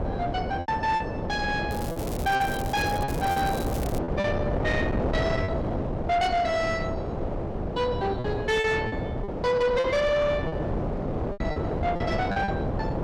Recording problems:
distorted audio; soft clipping, signal-to-distortion ratio 11 dB
wind noise; below 600 Hz, SNR 3 dB
packet loss; 8% of the sound replaced, filled with repeated pitch periods
crackle; from 1.5 to 4 s; loose cable, SNR 13 dB

